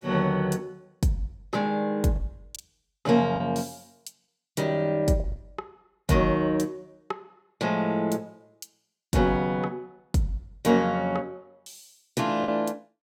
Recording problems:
lost packets; 3% of the sound replaced, filled with the last packet

